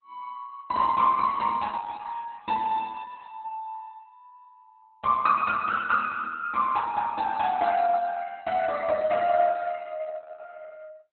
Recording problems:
lossy compression; Opus, log-spectral distance 3 dB, nothing above 4 kHz

